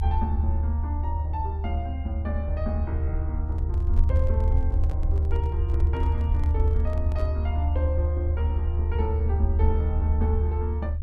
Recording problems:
low-frequency rumble; below 76 Hz, strongest tone 76 Hz, SNR -9 dB
handling noise; from 3.5 to 7.5 s; peak -4 dB vs average level

